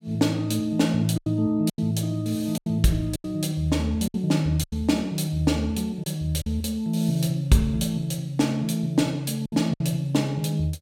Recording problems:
lost packets; 6% of the sound replaced, filled with silence

